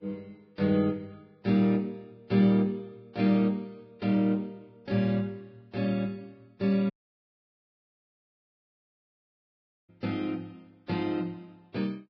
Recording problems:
lossy codec; Vorbis, log-spectral distance 2 dB, nothing above 5 kHz
audio cutting out; at 7 s for 3 s

